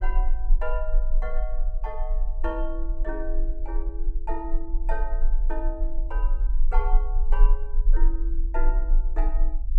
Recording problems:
low-frequency rumble; below 34 Hz, strongest tone 20 Hz, SNR -9 dB

